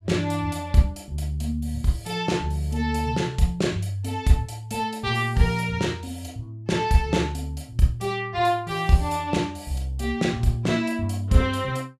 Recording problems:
none

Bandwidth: 14.5 kHz